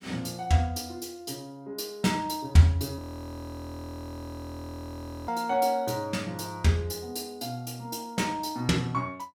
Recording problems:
frozen audio; at 3 s for 2.5 s

